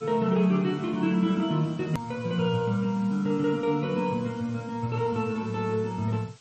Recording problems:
codec artefacts; MP3, log-spectral distance 3 dB, nothing above 13.1 kHz
hiss; slope +1 dB per octave, SNR 26 dB
click at an edit; at 2 s

